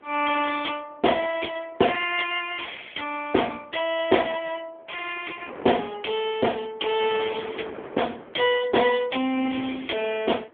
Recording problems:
phone line; 240 Hz to 3.4 kHz, AMR-NB
wind noise; below 1 kHz, SNR 17 dB

